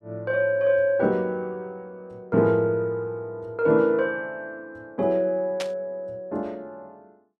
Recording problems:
burst of static; at 5.5 s; peak -4 dB vs average level

